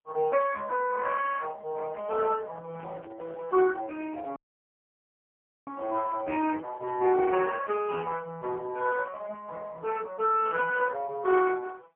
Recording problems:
phone line; 240 Hz to 3 kHz, AMR-NB, then MP3
handling noise; from 2.5 to 8 s; peak -11 dB vs average level
dropout; at 4.5 s for 1.5 s

